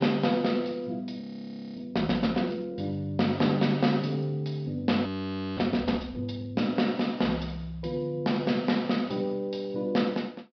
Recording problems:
treble missing; nothing above 5.5 kHz
frozen audio; at 1 s for 0.5 s and at 5 s for 0.5 s

